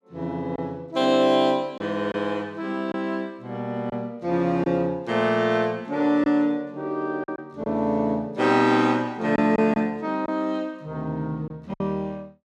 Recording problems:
packet loss; 3% of the sound replaced, filled with silence

